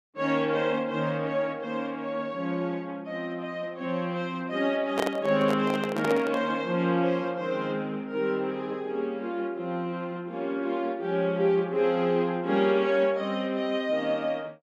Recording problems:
handling noise; from 5 to 6.5 s; peak +2 dB vs average level

